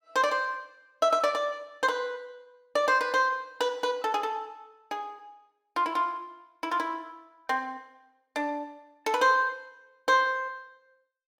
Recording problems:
none

